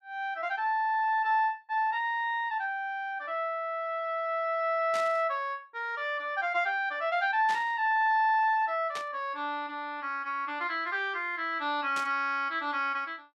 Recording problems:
static burst; 4 times, first at 5 s; peak -6 dB vs average level

